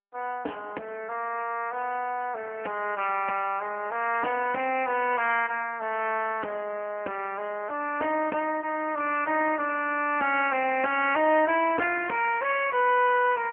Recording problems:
phone line; 240 Hz to 3 kHz, AMR-NB

